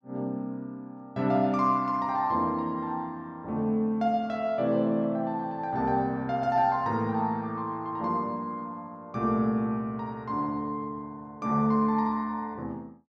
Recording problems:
none

